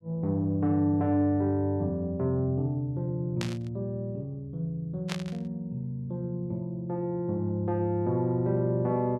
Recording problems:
burst of static; at 3.5 s and at 5 s; peak -1 dB vs average level

